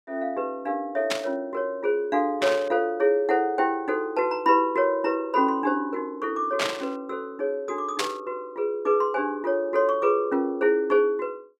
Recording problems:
static burst; 4 times, first at 1 s; peak +3 dB vs average level

